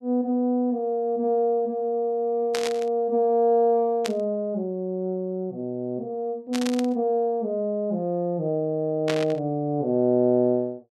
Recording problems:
static burst; 4 times, first at 2.5 s; peak -1 dB vs average level

